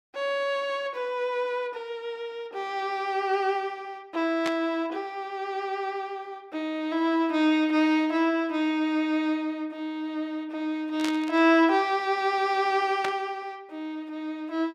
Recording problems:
burst of static; at 4.5 s, at 11 s and at 13 s; peak -1 dB vs average level

